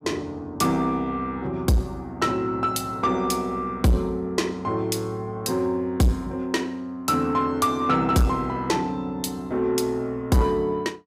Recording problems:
distortion; soft clipping, signal-to-distortion ratio 10 dB

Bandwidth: 15.5 kHz